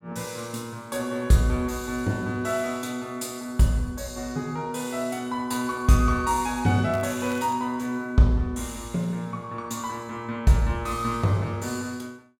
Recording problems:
crackle; at 7 s; loose cable, SNR 20 dB

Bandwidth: 16.5 kHz